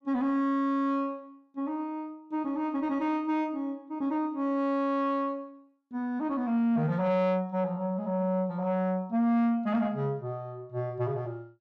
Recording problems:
distorted audio; soft clipping, signal-to-distortion ratio 11 dB

